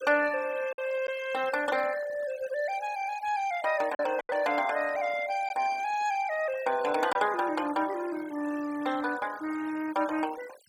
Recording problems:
denoising artefacts; signal-to-artefact ratio 17 dB
packet loss; 2% of the sound replaced, filled with silence

